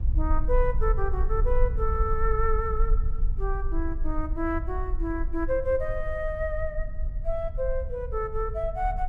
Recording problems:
rumble; below 50 Hz, strongest tone 22 Hz, SNR 1 dB

